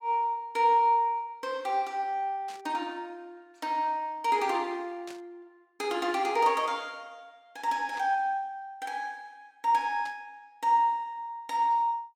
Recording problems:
burst of static; 4 times, first at 2.5 s; peak -13 dB vs average level

